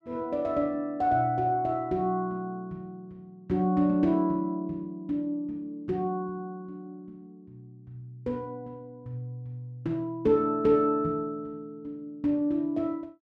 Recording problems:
none

